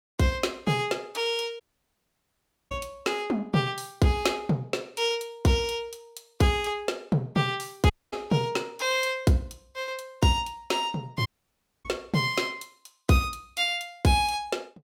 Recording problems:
dropout; at 1.5 s for 1 s, at 8 s and at 11 s for 0.5 s

